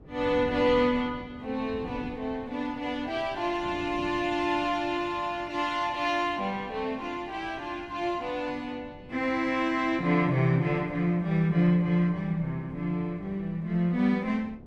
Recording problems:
wind noise; below 330 Hz, SNR 18 dB

